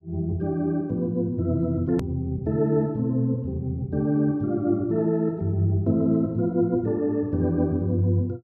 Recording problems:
click at an edit; at 2 s

